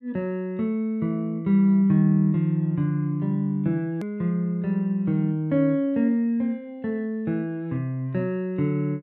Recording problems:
click at an edit; at 4 s

